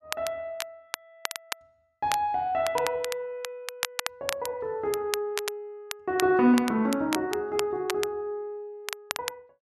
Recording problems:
crackle; vinyl, SNR 8 dB

